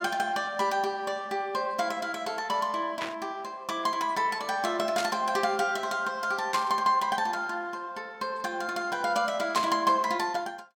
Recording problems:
burst of static; 4 times, first at 3 s; peak 0 dB vs average level

